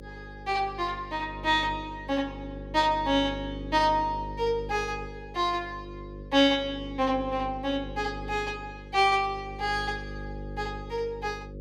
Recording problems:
hum; 50 Hz, harmonics up to 550 Hz, SNR 13 dB

